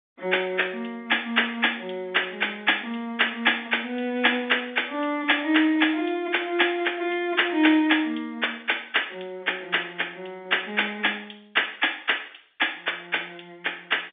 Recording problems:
telephone audio; 260 Hz to 3.6 kHz, G.711

